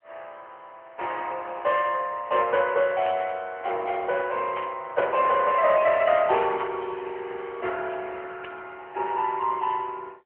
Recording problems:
telephone audio; 340 Hz to 3.1 kHz, AMR-NB
burst of static; 4 times, first at 3 s; peak -4 dB vs average level

